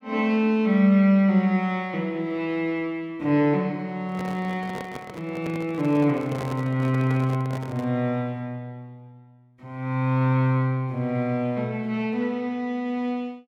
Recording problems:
microphone handling noise; from 4 to 8 s; peak -6 dB vs average level

